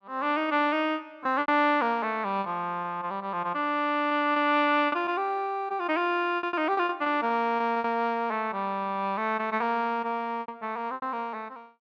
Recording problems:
lost packets; 8% of the sound replaced, filled with repeated pitch periods

